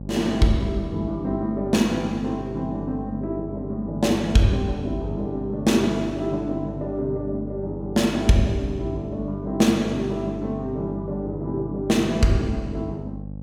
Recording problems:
hum; 50 Hz, harmonics up to 600 Hz, SNR 11 dB

